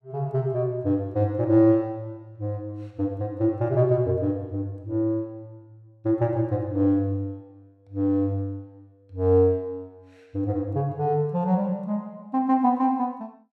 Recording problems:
none

